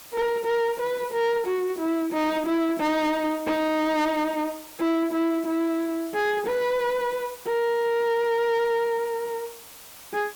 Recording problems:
distortion; soft clipping, signal-to-distortion ratio 10 dB
hiss; slope 0 dB per octave, SNR 19 dB

